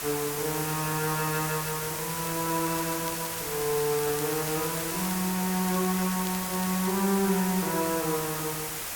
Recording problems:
background hiss; slope -1 dB per octave, SNR 2 dB
crackling; from 2 to 5 s and from 5.5 to 7 s; loose cable, SNR 14 dB

